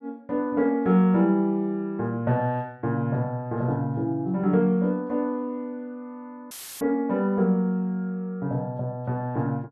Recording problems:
audio cutting out; at 6.5 s; filled with static

